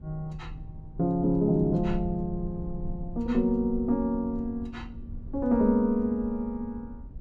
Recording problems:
low-frequency rumble; below 84 Hz, SNR 14 dB

